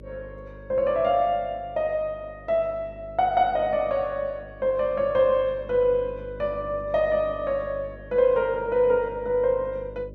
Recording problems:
hum; 50 Hz, harmonics up to 600 Hz, SNR 20 dB

